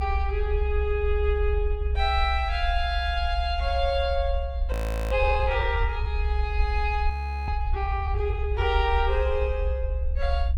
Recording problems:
rumble; below 66 Hz, SNR 0 dB
frozen audio; at 4.5 s and at 7 s

